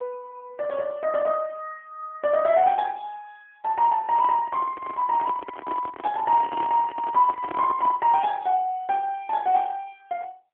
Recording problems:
phone line; 280 Hz to 2.8 kHz, AMR-NB
handling noise; from 4 to 8 s; peak -5 dB vs average level

